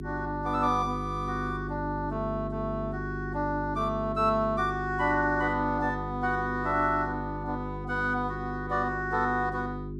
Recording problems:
electrical hum; 50 Hz, harmonics up to 400 Hz, SNR 7 dB

